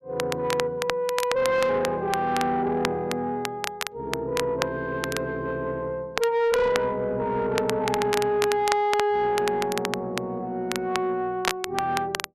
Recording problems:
distortion; soft clipping, signal-to-distortion ratio 11 dB
crackling; vinyl, SNR 7 dB

